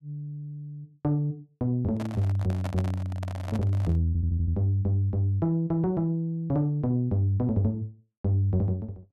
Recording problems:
handling noise; from 2 to 4 s; peak -6 dB vs average level
stutter; at 4 s

